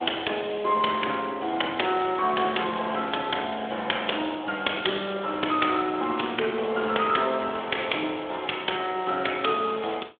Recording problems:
telephone audio; 280 Hz to 3.5 kHz, Speex

